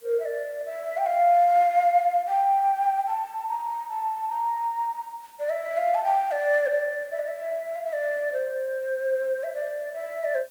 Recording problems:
hiss; slope -1 dB per octave, SNR 28 dB

